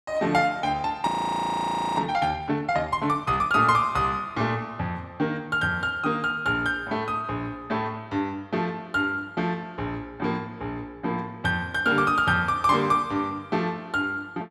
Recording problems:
audio freezing; at 1 s for 1 s

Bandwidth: 14.5 kHz